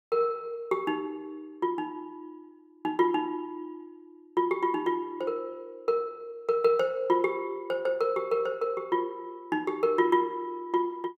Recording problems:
none

